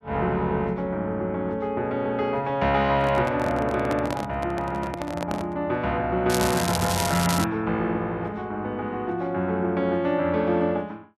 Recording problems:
handling noise; from 3 to 5.5 s; peak -2 dB vs average level
crackling; from 6.5 to 7.5 s; loose cable, SNR 5 dB

